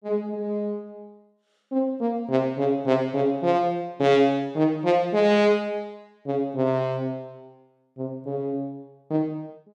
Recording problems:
none

